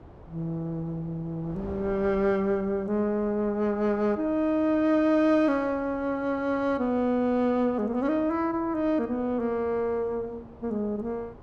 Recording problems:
wind on the microphone; below 570 Hz, SNR 21 dB

